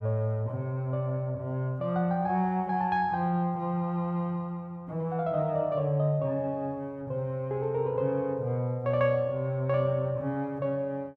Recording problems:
none

